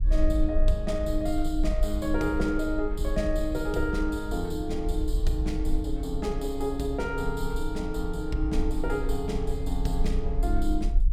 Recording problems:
low-frequency rumble; below 48 Hz, strongest tone 22 Hz, SNR 2 dB

